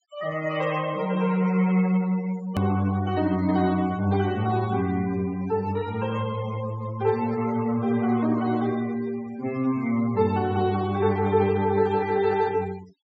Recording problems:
low-pass filter; nothing above 8 kHz
noise reduction artefacts; signal-to-artefact ratio 18 dB
hard cut with a click; at 2.5 s

